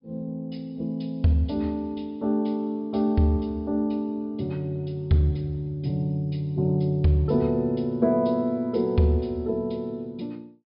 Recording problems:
low-pass filter; nothing above 5.5 kHz

